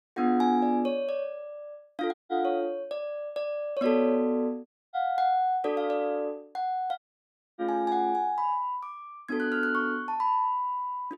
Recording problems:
dropout; at 2 s, at 4.5 s and at 7 s for 0.5 s

